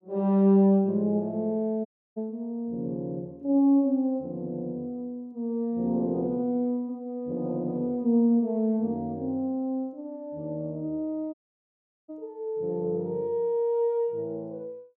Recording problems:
dropout; at 2 s and at 11 s for 0.5 s

